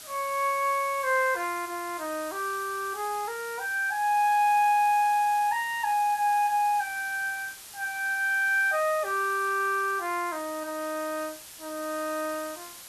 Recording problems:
background hiss; slope +1 dB per octave, SNR 15 dB

